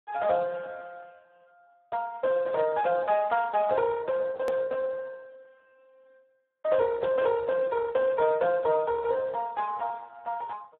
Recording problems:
telephone audio; 280 Hz to 2 kHz, Speex
edit click; at 4.5 s

